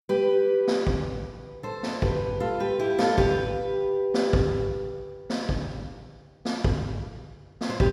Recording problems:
none

